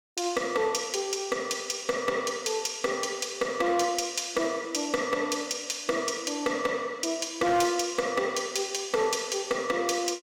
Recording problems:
distortion; hard clipping, uneven, signal-to-distortion ratio 11 dB

